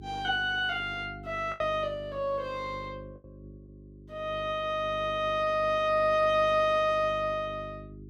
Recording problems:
hum; 50 Hz, harmonics up to 400 Hz, SNR 18 dB
lost packets; 1.2% of the sound replaced, filled with the last packet

